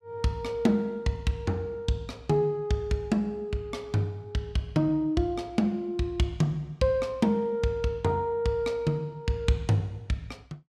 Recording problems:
none

